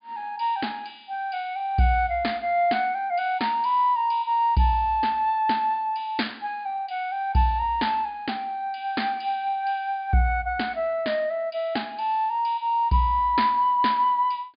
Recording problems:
low-pass filter; nothing above 4.9 kHz

